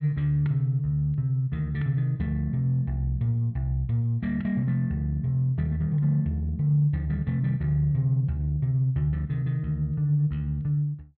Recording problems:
none

